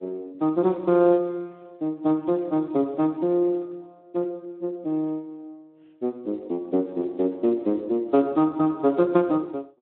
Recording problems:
telephone audio; 190 Hz to 3.3 kHz, Speex

